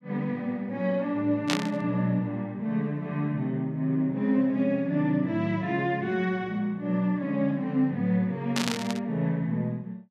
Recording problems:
static burst; at 1.5 s and at 8.5 s; peak +3 dB vs average level

